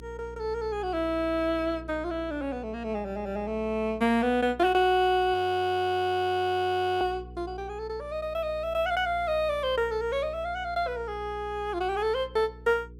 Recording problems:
hum; 60 Hz, harmonics up to 480 Hz, SNR 18 dB
audio freezing; at 5.5 s for 1.5 s

